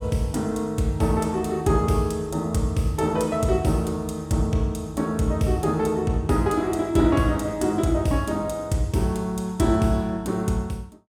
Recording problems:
none

